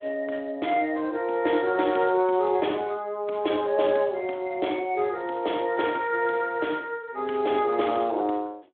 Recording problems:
telephone audio; 240 Hz to 3.6 kHz, Speex

